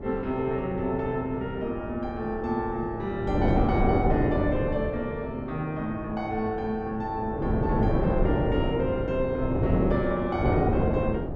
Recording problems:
wind noise; below 430 Hz, SNR 0 dB

